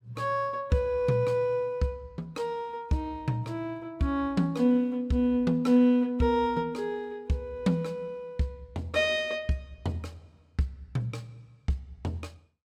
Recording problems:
none

